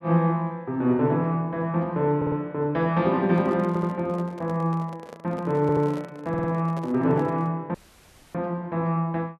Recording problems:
stutter; 4 times, first at 2 s
microphone handling noise; from 3 to 7.5 s; peak -11 dB vs average level
dropout; at 7.5 s for 0.5 s

